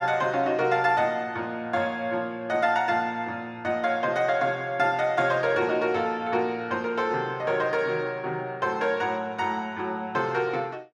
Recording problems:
none

